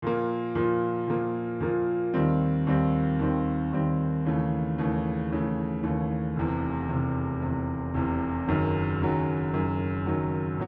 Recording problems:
none

